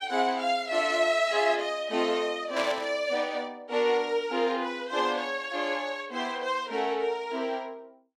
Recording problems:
burst of static; at 2.5 s; peak -2 dB vs average level

